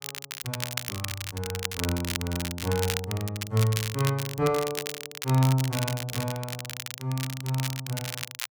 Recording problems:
crackling; vinyl, SNR 5 dB

